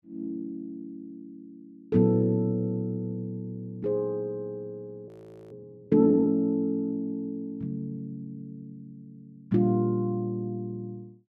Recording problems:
audio freezing; at 5 s

